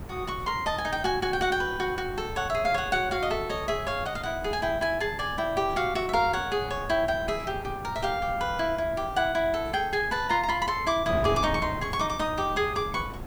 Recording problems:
background hiss; slope +3 dB per octave, SNR 28 dB
wind on the microphone; below 410 Hz, SNR 12 dB

